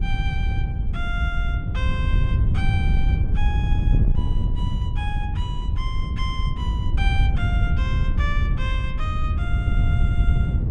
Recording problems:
wind noise; below 98 Hz, SNR -10 dB

